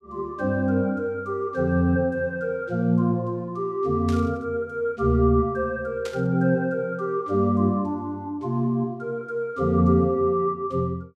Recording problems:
burst of static; at 4 s and at 6 s; peak -10 dB vs average level

